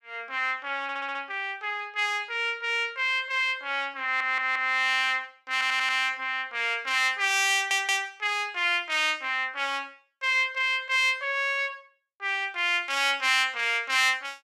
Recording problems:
audio stuttering; 4 times, first at 1 s

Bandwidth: 15.5 kHz